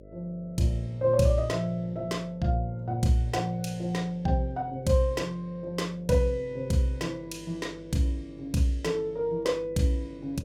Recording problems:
hum; 50 Hz, harmonics up to 600 Hz, SNR 21 dB

